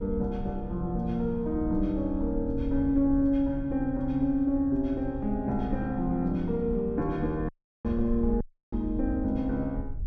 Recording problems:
wind on the microphone; below 74 Hz, SNR 10 dB
dropout; at 7.5 s and at 8.5 s

